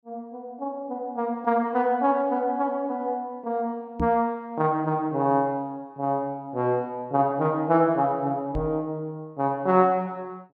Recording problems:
microphone thump; at 4 s and at 8.5 s; peak 0 dB vs average level

